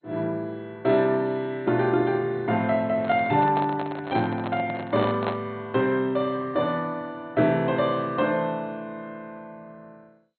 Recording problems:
lossy compression; MP2, log-spectral distance 2 dB, nothing above 3.6 kHz
handling noise; from 3 to 5.5 s; peak 0 dB vs average level

